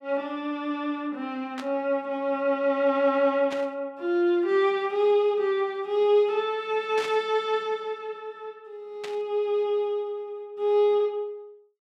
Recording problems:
burst of static; 4 times, first at 1.5 s; peak -7 dB vs average level

